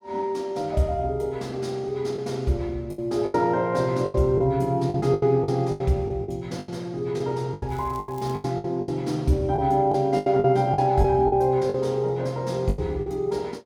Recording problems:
packet loss; 11% of the sound replaced, filled with the last packet
crackling; at 7.5 s; loose cable, SNR 27 dB

